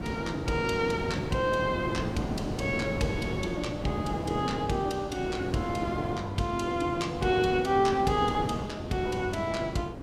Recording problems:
wind noise; below 450 Hz, SNR 6 dB

